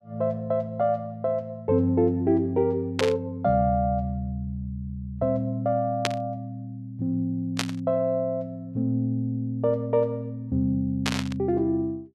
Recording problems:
static burst; 4 times, first at 3 s; peak +5 dB vs average level

